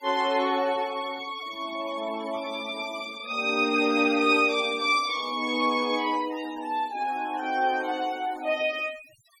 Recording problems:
noise reduction artefacts; signal-to-artefact ratio 20 dB

